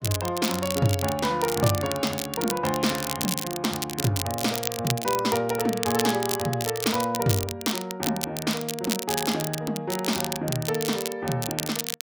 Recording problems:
crackling; vinyl, SNR 4 dB

